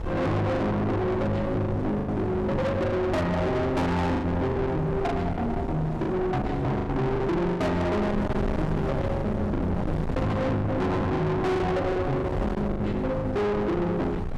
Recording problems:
distorted audio; soft clipping, signal-to-distortion ratio 6 dB
wind noise; below 550 Hz, SNR 6 dB
packet loss; 7% of the sound replaced, filled with the last packet

